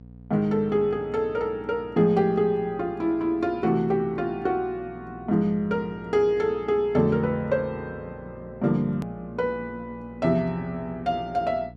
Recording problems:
hum; 60 Hz, harmonics up to 720 Hz, SNR 21 dB
click at an edit; at 9 s

